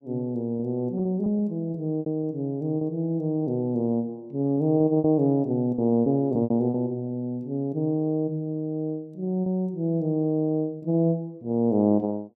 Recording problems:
packet loss; 6% of the sound replaced, filled with repeated pitch periods

